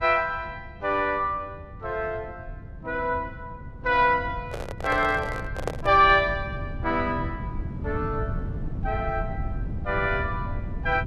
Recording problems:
low-frequency rumble; below 140 Hz, SNR 10 dB
handling noise; from 4.5 to 6 s; peak +1 dB vs average level

